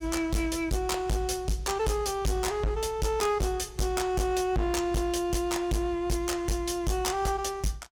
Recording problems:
distorted audio; hard clipping, uneven, signal-to-distortion ratio 6 dB

